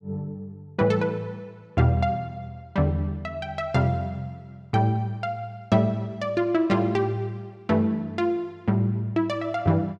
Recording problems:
none

